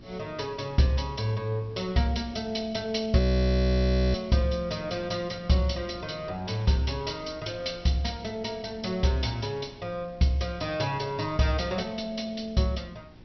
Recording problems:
treble missing; nothing above 5.8 kHz
hum; 60 Hz, harmonics up to 360 Hz, SNR 25 dB
wind noise; below 420 Hz, SNR 24 dB
audio freezing; at 3 s for 1 s

